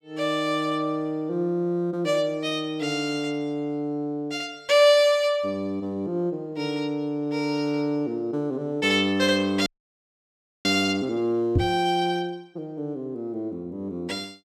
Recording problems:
frozen audio; at 9.5 s for 1 s
knock on the microphone; at 12 s; peak +6 dB vs average level

